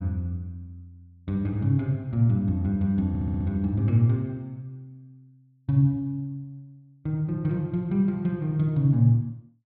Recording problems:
audio stuttering; at 3 s

